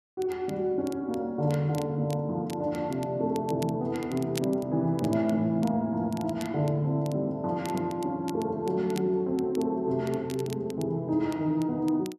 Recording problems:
crackle; vinyl, SNR 20 dB

